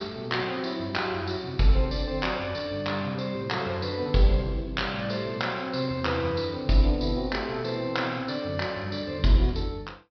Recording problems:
low-pass filter; nothing above 5.5 kHz

